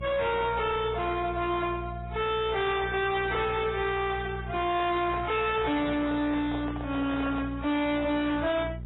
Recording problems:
lossy codec; AAC, then MP3, log-spectral distance 4 dB, nothing above 3.3 kHz
distortion; hard clipping, signal-to-distortion ratio 7 dB
electrical hum; 60 Hz, harmonics up to 420 Hz, SNR 11 dB
handling noise; from 4.5 to 7.5 s; peak -7 dB vs average level

